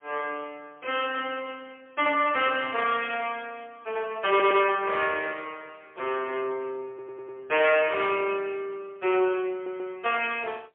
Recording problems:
phone line; 320 Hz to 3.4 kHz, AMR-NB, then MP3
distorted audio; soft clipping, signal-to-distortion ratio 13 dB
stutter; at 4.5 s, at 7 s and at 9.5 s

